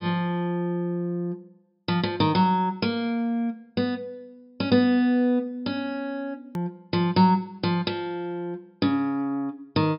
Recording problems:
treble cut off; nothing above 5.5 kHz
click at an edit; at 6.5 s

